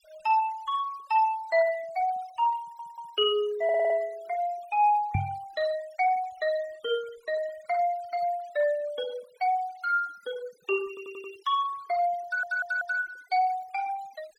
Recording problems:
noise reduction artefacts; signal-to-artefact ratio 21 dB
stutter; 4 times, first at 2.5 s
microphone thump; at 5 s; peak +4 dB vs average level

